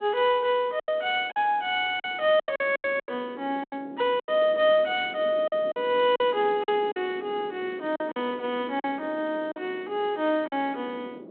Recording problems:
telephone audio; 240 Hz to 3.7 kHz, G.726
wind on the microphone; below 460 Hz, SNR 18 dB
packet loss; 9% of the sound replaced, filled with silence

